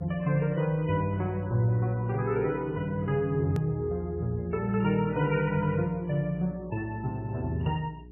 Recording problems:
codec artefacts; MP3, log-spectral distance 2 dB, nothing above 2.4 kHz
hum; 60 Hz, harmonics up to 420 Hz, SNR 20 dB
hard cut with a click; at 3.5 s

